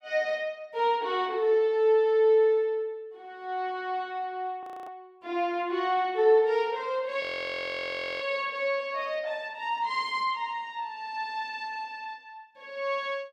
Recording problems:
audio freezing; at 4.5 s and at 7 s for 1 s

